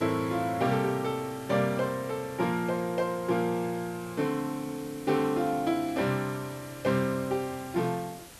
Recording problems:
background hiss; slope -2 dB per octave, SNR 18 dB

